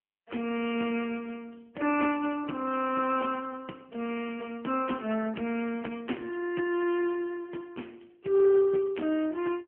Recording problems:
telephone audio; 220 Hz to 3.1 kHz, AMR-NB

